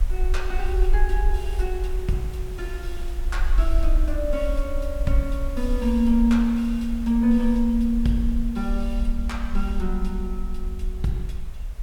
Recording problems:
background hiss; slope -4 dB per octave, SNR 19 dB
low-frequency rumble; below 48 Hz, SNR 3 dB

